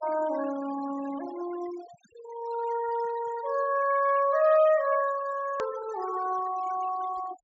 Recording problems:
treble cut off; nothing above 8 kHz
noise reduction artefacts; signal-to-artefact ratio 17 dB
hard cut with a click; at 5.5 s

